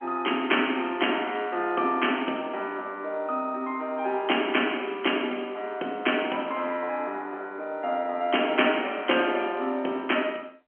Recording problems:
phone line; 220 Hz to 3.2 kHz, G.711

